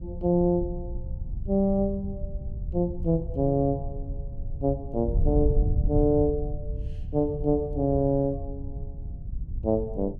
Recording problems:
wind noise; below 92 Hz, SNR 7 dB

